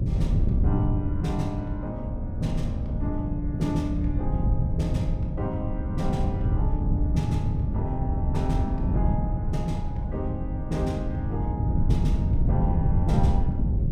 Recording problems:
hum; 60 Hz, harmonics up to 600 Hz, SNR 20 dB
wind on the microphone; below 130 Hz, SNR -5 dB

